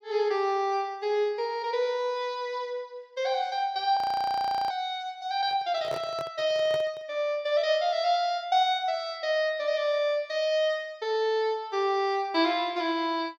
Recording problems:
frozen audio; at 4 s for 0.5 s
handling noise; from 5.5 to 7 s; peak -5 dB vs average level

